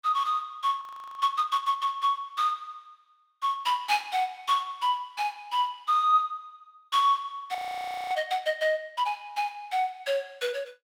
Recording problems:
audio freezing; at 1 s and at 7.5 s for 0.5 s

